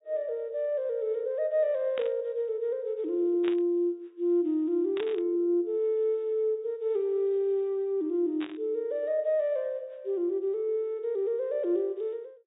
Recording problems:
low-pass filter; nothing above 4 kHz
static burst; 4 times, first at 2 s; peak -6 dB vs average level

